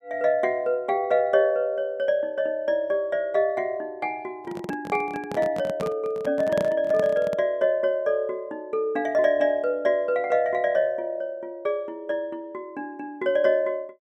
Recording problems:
microphone handling noise; from 4.5 to 7.5 s; peak -2 dB vs average level

